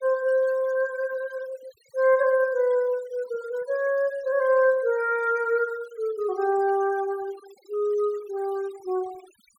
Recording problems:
noise reduction artefacts; signal-to-artefact ratio 24 dB

